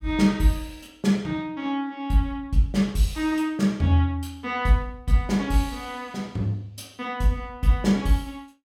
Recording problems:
none

